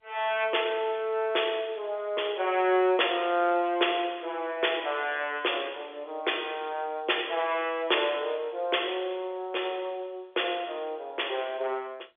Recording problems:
phone line; 320 Hz to 3.5 kHz, G.711

